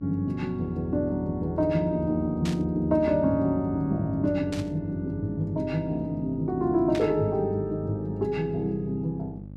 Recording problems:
hum; 50 Hz, harmonics up to 600 Hz, SNR 15 dB
burst of static; at 2.5 s, at 4.5 s and at 7 s; peak -6 dB vs average level

